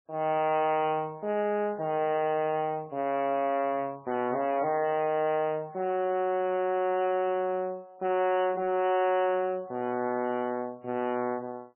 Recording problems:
codec artefacts; MP3, log-spectral distance 2 dB, nothing above 3 kHz
distorted audio; soft clipping, signal-to-distortion ratio 10 dB

